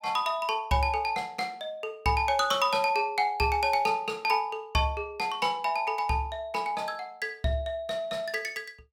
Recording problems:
none

